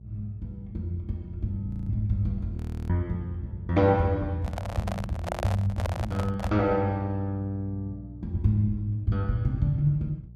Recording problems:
electrical hum; 60 Hz, harmonics up to 420 Hz, SNR 16 dB
audio freezing; at 1.5 s and at 2.5 s
handling noise; from 4.5 to 6.5 s; peak +1 dB vs average level

